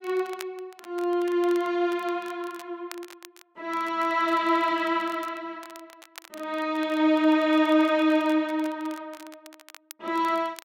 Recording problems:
crackle; vinyl, SNR 23 dB

